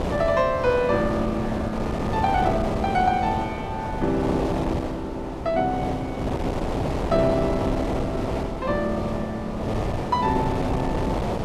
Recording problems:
wind on the microphone; below 670 Hz, SNR 2 dB

